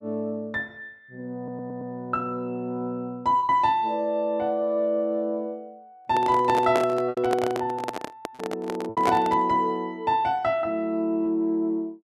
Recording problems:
lost packets; 3% of the sound replaced, filled with repeated pitch periods
audio stuttering; at 1.5 s
microphone handling noise; from 6 to 9.5 s; peak +2 dB vs average level

